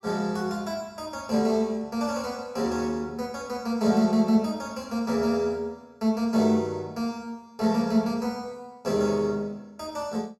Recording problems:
none

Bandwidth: 16 kHz